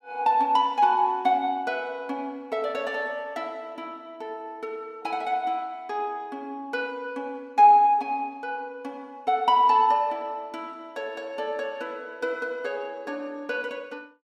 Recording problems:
none

